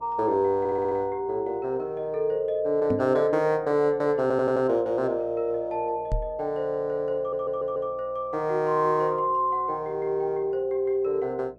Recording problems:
electrical hum; 60 Hz, harmonics up to 660 Hz, SNR 27 dB
stutter; at 0.5 s, at 4 s and at 7 s
knock on the microphone; at 3 s and at 6 s; peak +1 dB vs average level

